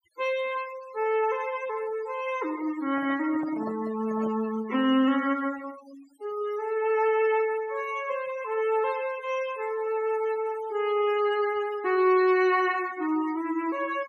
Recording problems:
denoising artefacts; signal-to-artefact ratio 17 dB
microphone handling noise; from 2.5 to 4.5 s; peak -8 dB vs average level

